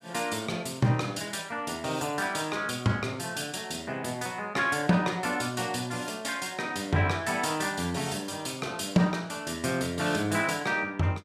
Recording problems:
none

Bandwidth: 14.5 kHz